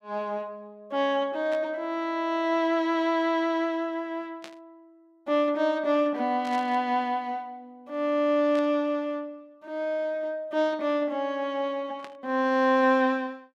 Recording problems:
burst of static; 5 times, first at 1.5 s; peak -11 dB vs average level

